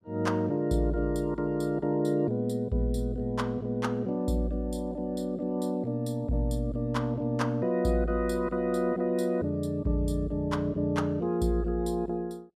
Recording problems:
none

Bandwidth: 14.5 kHz